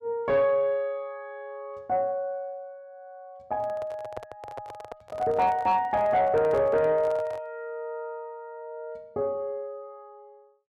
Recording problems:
distorted audio; soft clipping, signal-to-distortion ratio 11 dB
microphone handling noise; from 3.5 to 7.5 s; peak -6 dB vs average level

